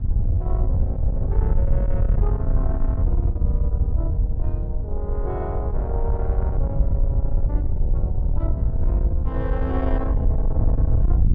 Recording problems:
distorted audio; soft clipping, signal-to-distortion ratio 12 dB
wind on the microphone; below 80 Hz, SNR -9 dB

